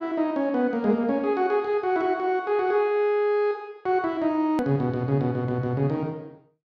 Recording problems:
click at an edit; at 4.5 s

